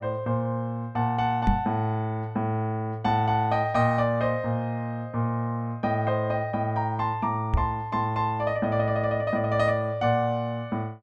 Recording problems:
microphone bump; at 1.5 s and at 7.5 s; peak +6 dB vs average level

